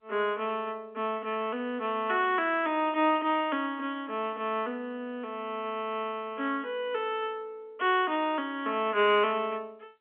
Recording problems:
telephone audio; 240 Hz to 3.4 kHz, G.711

